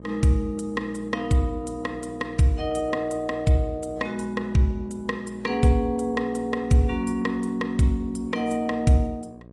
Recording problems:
lossy codec; AAC, log-spectral distance 2 dB, nothing above 10.7 kHz
hum; 60 Hz, harmonics up to 1.1 kHz, SNR 20 dB

